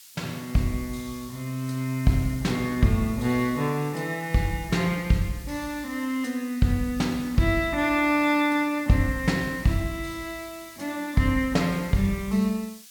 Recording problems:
background hiss; slope +5 dB per octave, SNR 19 dB

